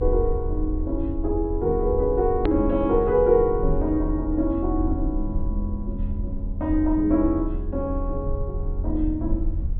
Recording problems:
low-pass filter; nothing above 4.4 kHz
rumble; below 78 Hz, strongest tone 34 Hz, SNR 6 dB
edit click; at 2.5 s

